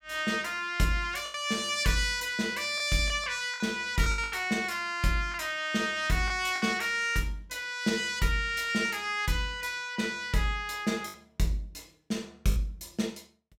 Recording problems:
lost packets; 4% of the sound replaced, filled with the last packet

